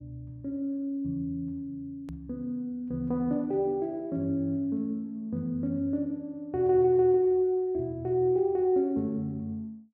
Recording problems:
edit click; at 2 s

